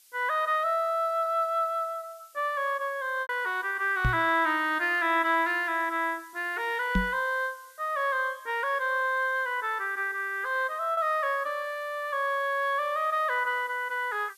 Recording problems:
background hiss; slope +4 dB per octave, SNR 27 dB
lost packets; 0.9% of the sound replaced, filled with repeated pitch periods
microphone bump; at 4 s and at 7 s; peak +4 dB vs average level

